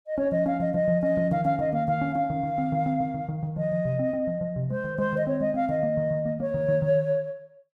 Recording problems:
none

